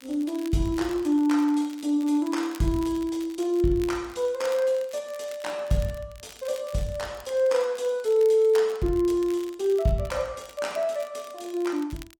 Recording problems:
lossy codec; Opus, log-spectral distance 2 dB, nothing above 17.7 kHz
crackle; vinyl, SNR 23 dB

